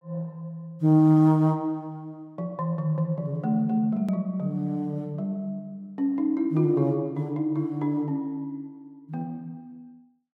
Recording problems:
click at an edit; at 4 s

